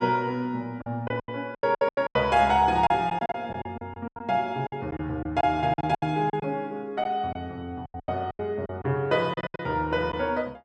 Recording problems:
lost packets; 14% of the sound replaced, filled with silence

